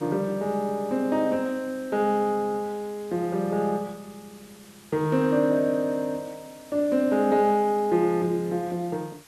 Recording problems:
hiss; slope -1 dB per octave, SNR 24 dB

